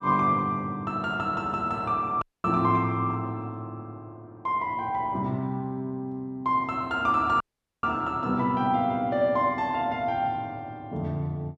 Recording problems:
dropout; at 2 s and at 7.5 s

